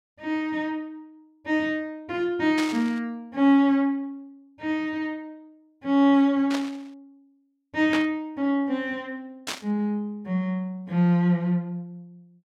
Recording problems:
static burst; 4 times, first at 2.5 s; peak -1 dB vs average level

